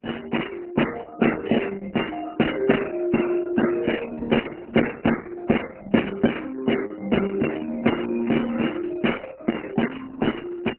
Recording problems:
codec artefacts; MP3, then Opus, log-spectral distance 7 dB, nothing above 2.9 kHz

